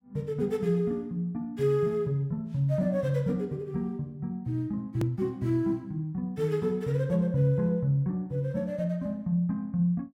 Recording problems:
edit click; at 5 s

